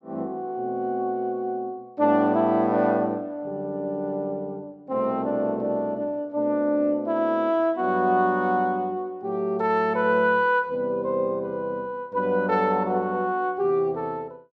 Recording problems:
none

